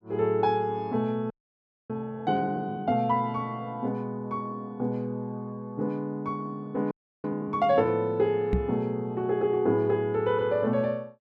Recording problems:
frozen audio; at 1.5 s for 0.5 s and at 7 s
microphone bump; at 8.5 s; peak +6 dB vs average level

